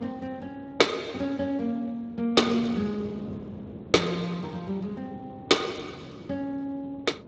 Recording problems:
lossy compression; Speex, log-spectral distance 3 dB, nothing above 7.3 kHz
wind noise; below 420 Hz, SNR 16 dB

